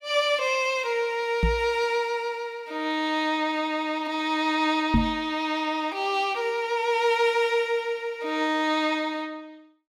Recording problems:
microphone thump; at 1.5 s and at 5 s; peak +6 dB vs average level

